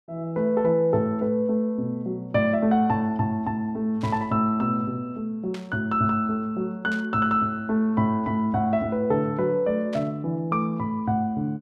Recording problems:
static burst; 4 times, first at 4 s; peak -12 dB vs average level

